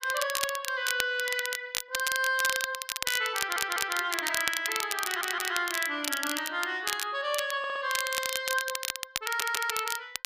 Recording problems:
crackling; vinyl, SNR 3 dB
audio stuttering; 4 times, first at 3.5 s

